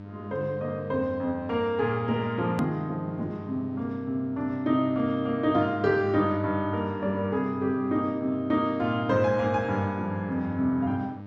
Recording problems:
electrical hum; 50 Hz, harmonics up to 1.2 kHz, SNR 15 dB
click at an edit; at 2.5 s

